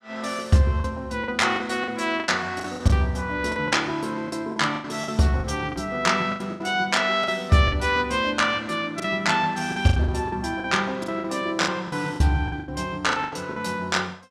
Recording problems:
packet loss; 12% of the sound replaced, filled with the last packet

